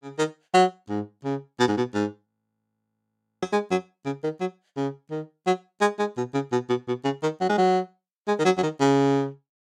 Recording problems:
audio freezing; at 2.5 s for 1 s

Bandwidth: 16.5 kHz